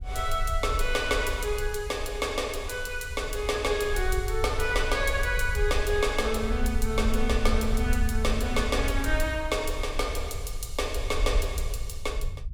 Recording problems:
low-frequency rumble; below 62 Hz, SNR 4 dB

